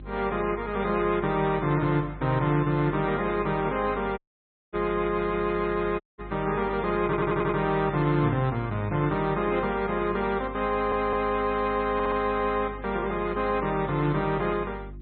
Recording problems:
treble missing; nothing above 3.9 kHz
lossy compression; MP3, log-spectral distance 2 dB
electrical hum; 50 Hz, harmonics up to 350 Hz, SNR 16 dB
audio cutting out; at 4 s for 0.5 s and at 6 s
audio stuttering; at 7 s, at 11 s and at 12 s

